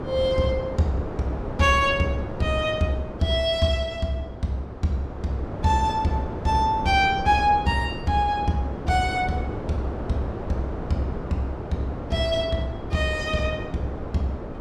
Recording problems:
wind noise; below 580 Hz, SNR 8 dB

